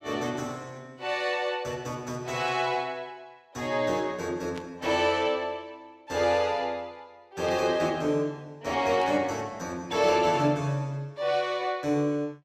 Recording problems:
static burst; 4 times, first at 2.5 s; peak -11 dB vs average level

